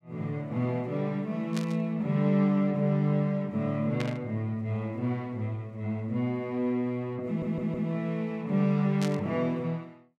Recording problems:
burst of static; at 1.5 s, at 4 s and at 9 s; peak -4 dB vs average level
stutter; at 7.5 s

